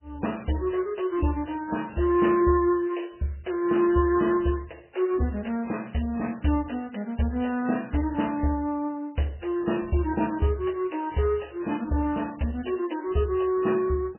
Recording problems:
codec artefacts; MP3, log-spectral distance 6 dB, nothing above 3 kHz

